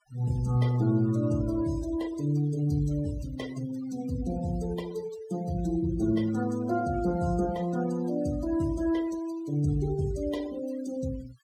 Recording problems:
noise reduction artefacts; signal-to-artefact ratio 18 dB

